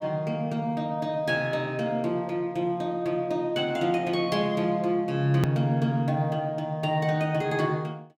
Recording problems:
edit click; at 5.5 s

